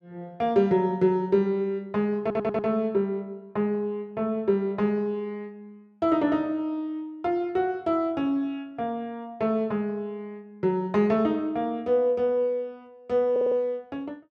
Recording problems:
audio stuttering; at 2 s and at 13 s

